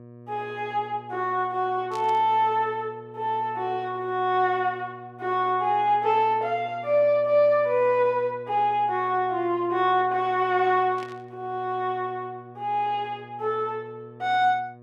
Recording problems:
electrical hum; 60 Hz, harmonics up to 1.2 kHz, SNR 21 dB
burst of static; at 2 s and at 11 s; peak -13 dB vs average level

